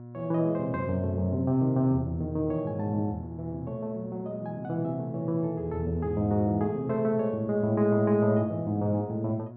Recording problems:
hum; 60 Hz, harmonics up to 1.1 kHz, SNR 15 dB

